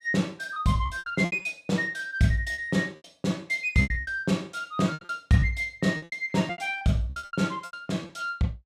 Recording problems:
lost packets; 16% of the sound replaced, filled with repeated pitch periods

